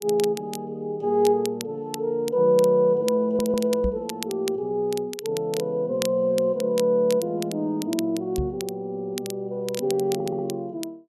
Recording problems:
crackle; vinyl, SNR 14 dB
stutter; at 3 s and at 10 s
microphone bump; at 4 s and at 8.5 s; peak +1 dB vs average level

